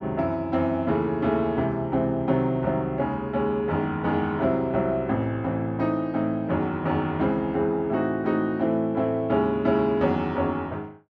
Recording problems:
none

